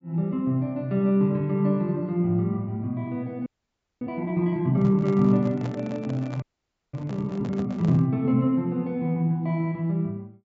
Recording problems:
treble missing; nothing above 8 kHz
frozen audio; at 3.5 s for 0.5 s and at 6.5 s for 0.5 s
handling noise; from 4.5 to 8 s; peak -9 dB vs average level

